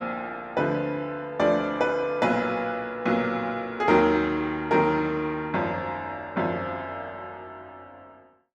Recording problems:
none

